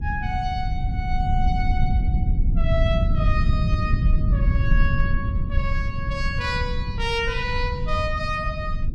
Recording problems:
rumble; below 100 Hz, SNR -4 dB

